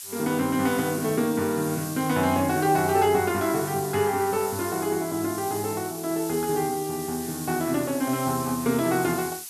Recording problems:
background hiss; slope +5 dB per octave, SNR 10 dB

